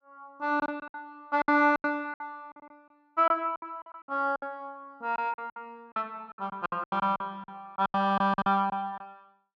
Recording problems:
lost packets; 16% of the sound replaced, filled with silence

